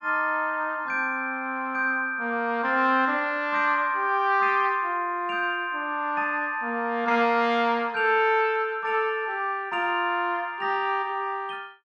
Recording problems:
none

